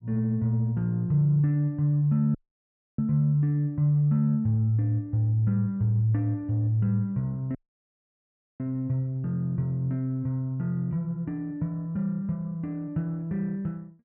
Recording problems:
audio cutting out; at 2.5 s for 0.5 s and at 7.5 s for 1 s

